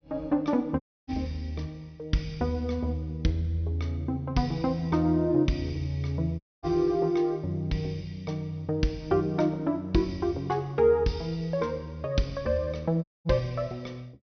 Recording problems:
treble missing; nothing above 6.1 kHz
dropout; at 1 s, at 6.5 s and at 13 s

